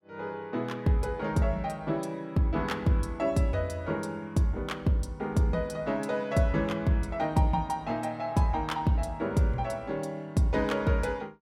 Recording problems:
none

